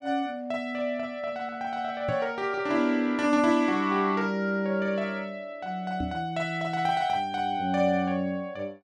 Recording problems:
microphone bump; at 2 s and at 6 s; peak -2 dB vs average level

